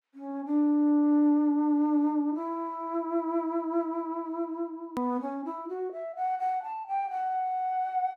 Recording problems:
click at an edit; at 5 s

